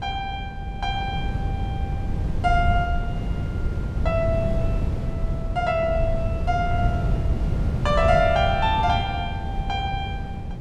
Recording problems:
wind noise; below 140 Hz, SNR 2 dB

